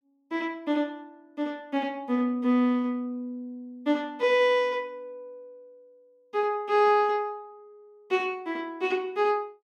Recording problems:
none

